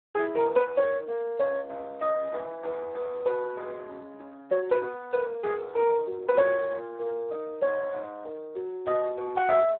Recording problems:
phone line; 300 Hz to 3 kHz, Speex

